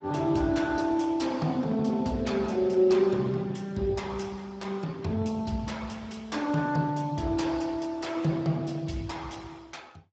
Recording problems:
lossy compression; Speex, log-spectral distance 4 dB, nothing above 7.6 kHz

